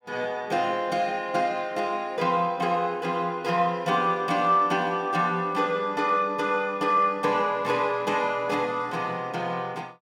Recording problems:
none

